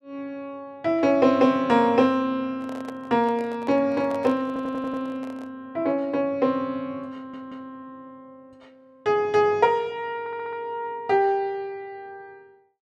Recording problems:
handling noise; from 2.5 to 5.5 s; peak -10 dB vs average level
audio stuttering; at 4.5 s, at 7 s and at 10 s

